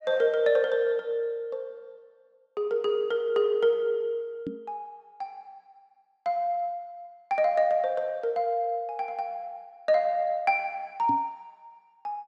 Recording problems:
microphone bump; at 4.5 s and at 11 s; peak -2 dB vs average level

